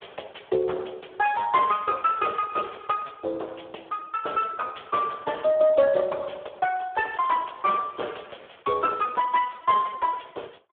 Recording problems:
phone line; 320 Hz to 2.9 kHz, Speex
crackling; from 1.5 to 3 s and from 8 to 9 s; loose cable, SNR 30 dB

